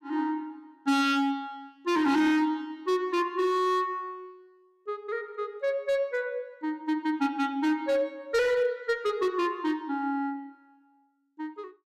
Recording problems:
distortion; hard clipping, signal-to-distortion ratio 10 dB

